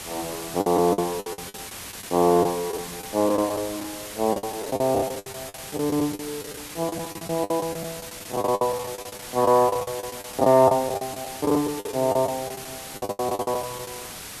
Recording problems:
hiss; slope -1 dB per octave, SNR 11 dB
packet loss; 19% of the sound replaced, filled with the last packet

